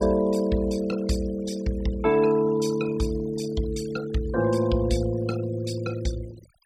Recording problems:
noise reduction artefacts; signal-to-artefact ratio 17 dB

